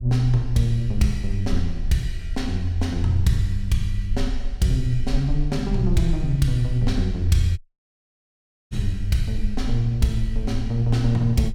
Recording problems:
rumble; below 42 Hz, strongest tone 18 Hz, SNR 8 dB
audio cutting out; at 7.5 s for 1 s

